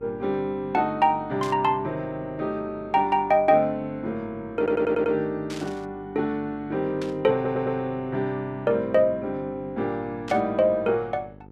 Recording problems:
hum; 50 Hz, harmonics up to 1 kHz, SNR 21 dB
burst of static; 4 times, first at 1.5 s; peak -9 dB vs average level
stutter; at 4.5 s and at 7.5 s

